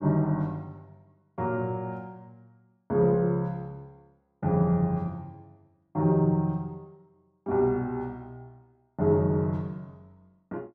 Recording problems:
none

